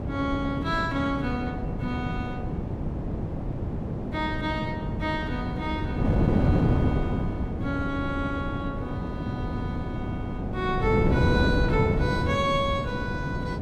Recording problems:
wind noise; below 300 Hz, SNR -2 dB

